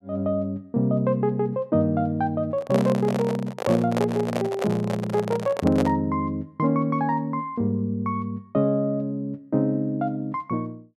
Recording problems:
handling noise; from 2.5 to 6 s; peak +2 dB vs average level

